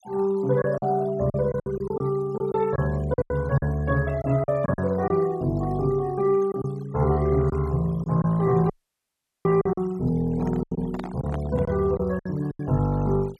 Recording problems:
noise reduction artefacts; signal-to-artefact ratio 23 dB
packet loss; 9% of the sound replaced, filled with silence
dropout; at 8.5 s for 1 s
microphone handling noise; from 10 to 12 s; peak -7 dB vs average level

